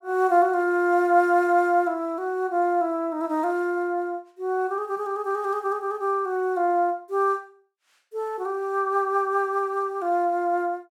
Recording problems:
none

